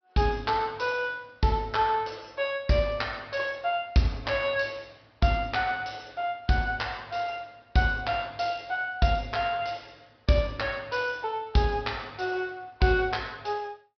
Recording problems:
low-pass filter; nothing above 5.5 kHz

